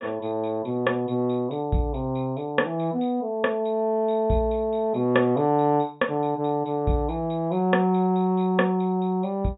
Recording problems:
treble missing; nothing above 4 kHz

